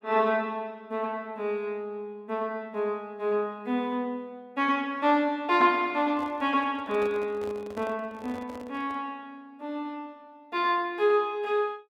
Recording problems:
handling noise; from 6 to 9 s; peak -9 dB vs average level

